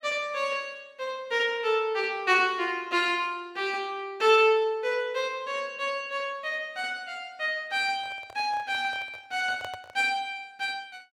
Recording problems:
microphone handling noise; from 8 to 10 s; peak -7 dB vs average level

